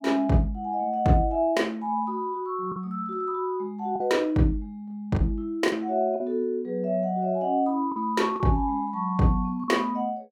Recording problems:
packet loss; 3% of the sound replaced, filled with the last packet

